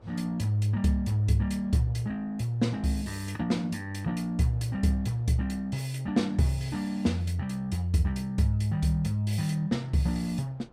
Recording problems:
wind on the microphone; below 710 Hz, SNR 30 dB

